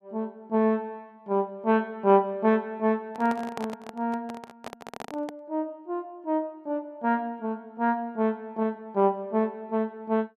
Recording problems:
microphone handling noise; from 3 to 5.5 s; peak -4 dB vs average level

